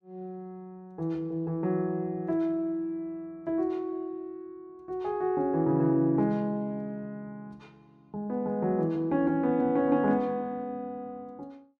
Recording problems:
none

